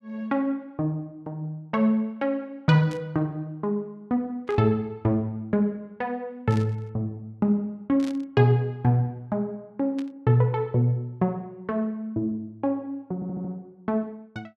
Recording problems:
static burst; 5 times, first at 3 s; peak -12 dB vs average level
stutter; at 13 s

